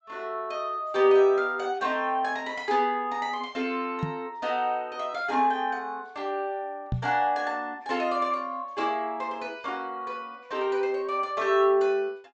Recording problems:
treble missing; nothing above 8 kHz
microphone thump; at 4 s and at 7 s; peak +2 dB vs average level

